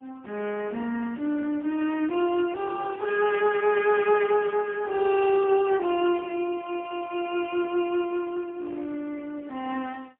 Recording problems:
telephone audio; 190 Hz to 3.3 kHz, AMR-NB, then MP3

